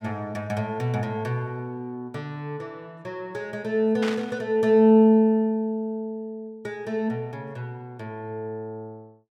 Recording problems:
static burst; at 4 s; peak -4 dB vs average level

